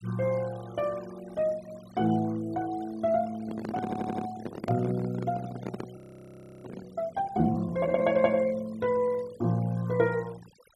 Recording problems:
noise reduction artefacts; signal-to-artefact ratio 20 dB
microphone handling noise; from 3.5 to 7 s; peak -2 dB vs average level
audio stuttering; at 4 s
audio freezing; at 6 s for 0.5 s

